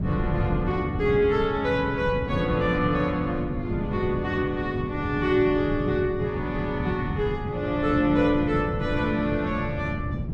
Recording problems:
wind noise; below 190 Hz, SNR 5 dB

